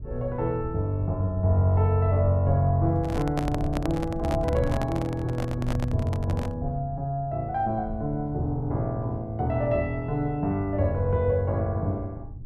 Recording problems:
low-frequency rumble; below 100 Hz, SNR 11 dB
handling noise; from 3 to 6.5 s; peak -1 dB vs average level

